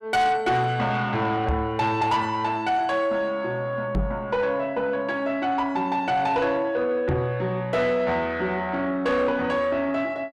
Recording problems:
distorted audio; soft clipping, signal-to-distortion ratio 11 dB
knock on the microphone; at 1.5 s, at 4 s and at 7 s; peak +3 dB vs average level

